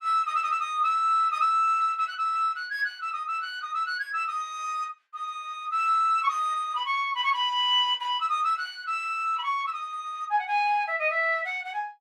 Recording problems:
none

